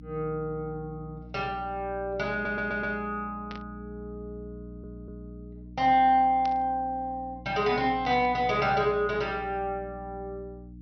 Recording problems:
treble cut off; nothing above 5.9 kHz
hum; 60 Hz, harmonics up to 300 Hz, SNR 17 dB
audio stuttering; at 2.5 s and at 4.5 s
burst of static; at 3.5 s, at 6.5 s and at 8 s; peak -10 dB vs average level

